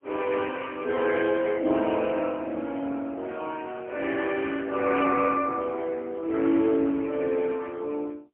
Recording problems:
phone line; 240 Hz to 3.3 kHz, AMR-NB, then MP3

